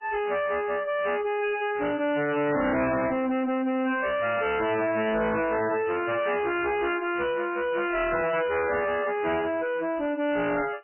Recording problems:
lossy codec; MP3, log-spectral distance 4 dB, nothing above 2.9 kHz
distorted audio; soft clipping, signal-to-distortion ratio 6 dB

